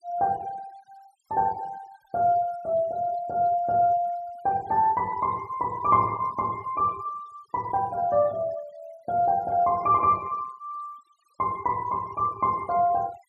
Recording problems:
noise reduction artefacts; signal-to-artefact ratio 24 dB

